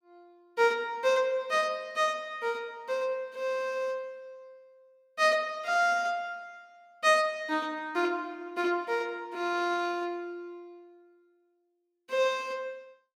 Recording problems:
none

